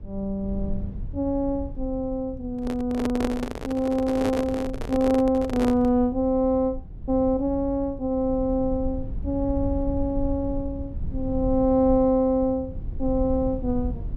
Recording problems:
rumble; below 86 Hz, SNR 11 dB
microphone handling noise; from 2.5 to 6 s; peak 0 dB vs average level

